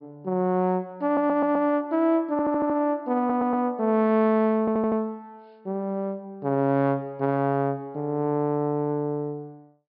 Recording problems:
treble cut off; nothing above 5.5 kHz
stutter; 4 times, first at 1 s

